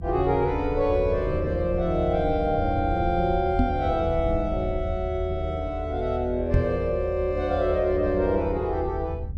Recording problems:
low-frequency rumble; below 82 Hz, SNR 7 dB
microphone thump; at 3.5 s and at 6.5 s; peak +5 dB vs average level

